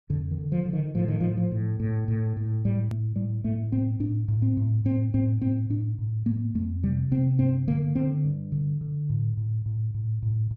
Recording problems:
edit click; at 3 s

